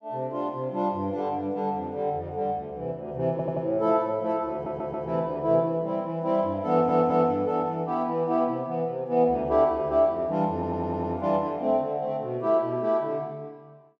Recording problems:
audio stuttering; 4 times, first at 3.5 s

